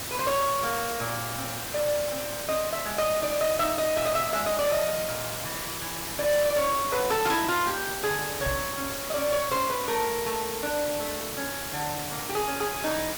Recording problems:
distorted audio; soft clipping, signal-to-distortion ratio 11 dB
background hiss; slope -2 dB per octave, SNR 4 dB
microphone thump; at 8.5 s; peak -2 dB vs average level

